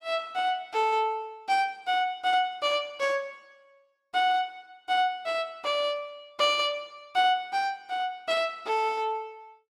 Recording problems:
none

